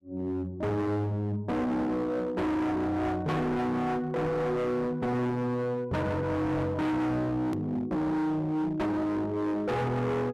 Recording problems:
distortion; hard clipping, signal-to-distortion ratio 6 dB
click at an edit; at 7.5 s

